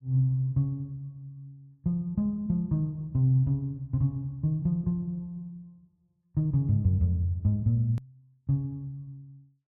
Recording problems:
click at an edit; at 8 s

